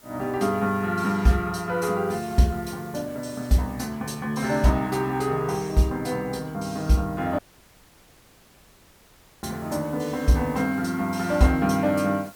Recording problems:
background hiss; slope -3 dB per octave, SNR 24 dB
audio cutting out; at 7.5 s for 2 s

